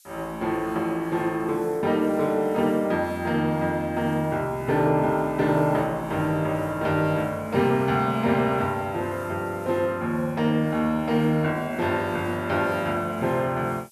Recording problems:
background hiss; slope +7 dB per octave, SNR 27 dB

